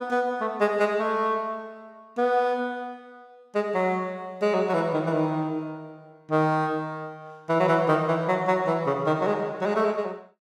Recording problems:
none

